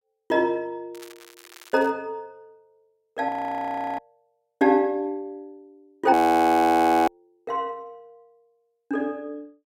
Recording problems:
crackle; at 1 s; loose cable, SNR 24 dB
audio freezing; at 3.5 s for 0.5 s and at 6 s for 1 s

